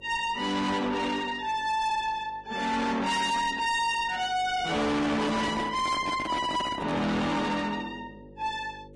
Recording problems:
lossy codec; Vorbis, log-spectral distance 3 dB, nothing above 10.4 kHz
distortion; soft clipping, signal-to-distortion ratio 6 dB
electrical hum; 50 Hz, harmonics up to 550 Hz, SNR 24 dB
microphone handling noise; from 5 to 7 s; peak 0 dB vs average level

